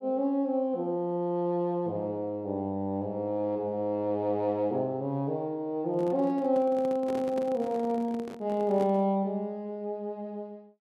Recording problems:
microphone handling noise; from 6 to 9 s; peak -5 dB vs average level

